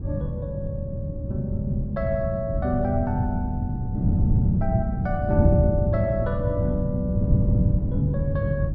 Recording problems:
wind noise; below 160 Hz, SNR -2 dB

